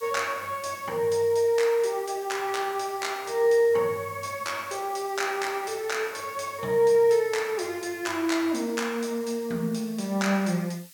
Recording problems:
background hiss; SNR 21 dB

